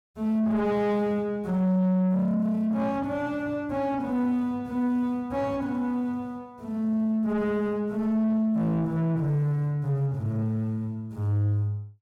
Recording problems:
distorted audio; soft clipping, signal-to-distortion ratio 10 dB

